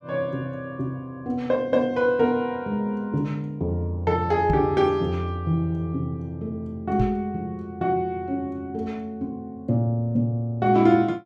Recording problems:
microphone bump; at 4.5 s and at 7 s; peak +4 dB vs average level

